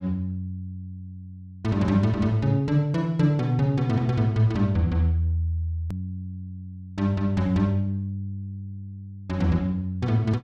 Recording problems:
edit click; at 6 s

